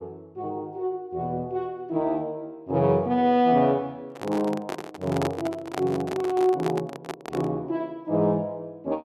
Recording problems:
microphone handling noise; from 4 to 7.5 s; peak +2 dB vs average level

